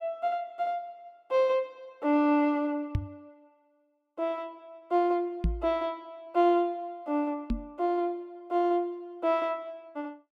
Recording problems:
microphone bump; at 3 s, at 5.5 s and at 7.5 s; peak +4 dB vs average level

